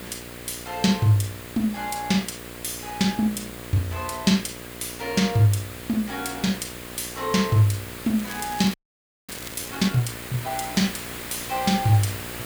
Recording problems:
mains hum; 60 Hz, harmonics up to 1.9 kHz, SNR 16 dB
background hiss; SNR 12 dB
crackle; from 8 to 10 s; loose cable, SNR 17 dB
frozen audio; at 8.5 s for 0.5 s

